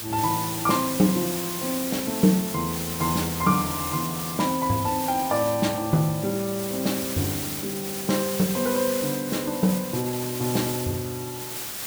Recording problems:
background hiss; slope 0 dB per octave, SNR 5 dB

